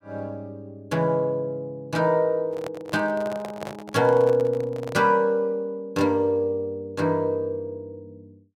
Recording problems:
microphone handling noise; from 2.5 to 5 s; peak -6 dB vs average level

